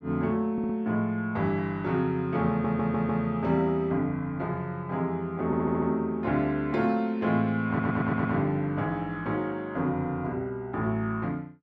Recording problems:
audio stuttering; 4 times, first at 0.5 s

